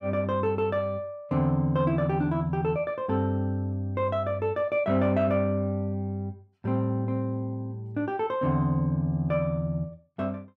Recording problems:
none

